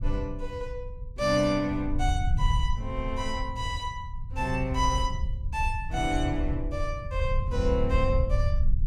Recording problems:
rumble; below 82 Hz, SNR 2 dB

